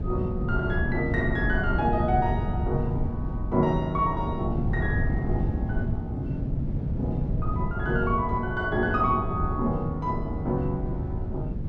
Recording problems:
wind noise; below 160 Hz, SNR 1 dB

